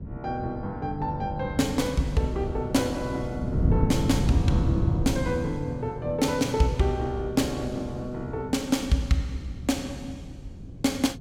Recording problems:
wind on the microphone; below 190 Hz, SNR 5 dB

